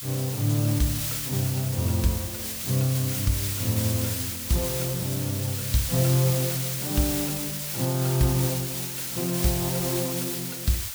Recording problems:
hiss; slope +3 dB per octave, SNR 2 dB

